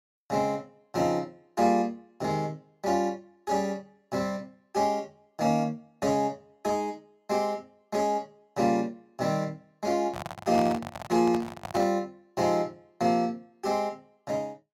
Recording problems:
handling noise; from 10 to 12 s; peak -2 dB vs average level

